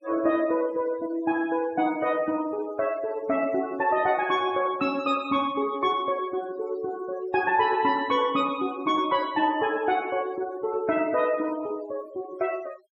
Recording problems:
denoising artefacts; signal-to-artefact ratio 19 dB

